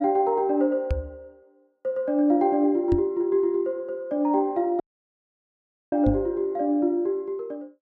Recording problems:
knock on the microphone; at 1 s, at 3 s and at 6 s; peak +2 dB vs average level
audio cutting out; at 5 s for 1 s

